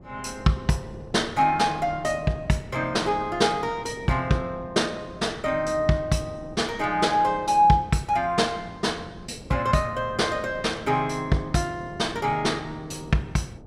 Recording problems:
wind on the microphone; below 400 Hz, SNR 18 dB

